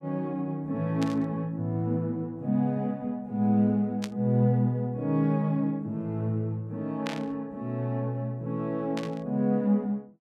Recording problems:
burst of static; 4 times, first at 1 s; peak -3 dB vs average level

